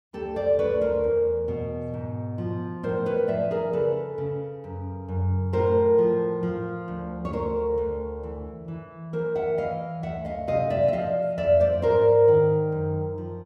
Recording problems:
none

